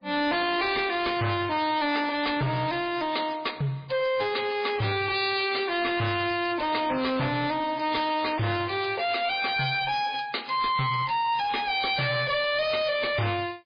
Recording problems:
lossy codec; MP3, log-spectral distance 6 dB, nothing above 4.2 kHz
distorted audio; hard clipping, signal-to-distortion ratio 7 dB

